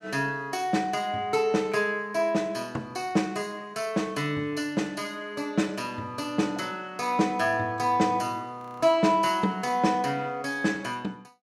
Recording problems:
frozen audio; at 8.5 s

